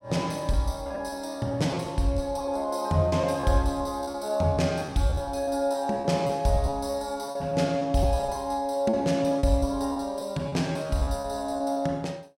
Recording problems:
lost packets; 11% of the sound replaced, filled with repeated pitch periods

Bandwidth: 16 kHz